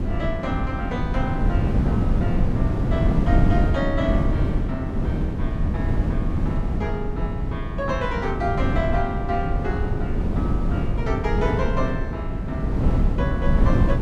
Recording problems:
wind on the microphone; below 190 Hz, SNR -6 dB

